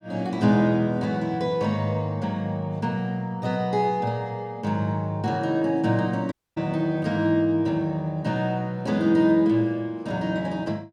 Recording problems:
audio cutting out; at 6.5 s

